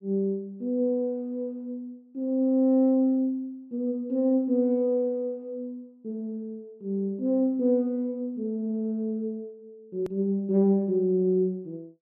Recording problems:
edit click; at 10 s

